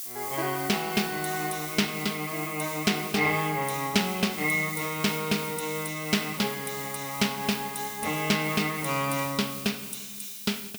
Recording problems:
hiss; slope +5 dB per octave, SNR 8 dB

